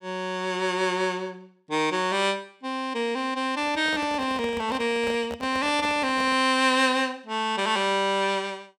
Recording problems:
microphone handling noise; from 3.5 to 6.5 s; peak -7 dB vs average level

